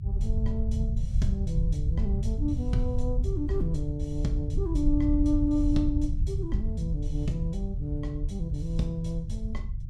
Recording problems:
rumble; below 88 Hz, SNR -1 dB

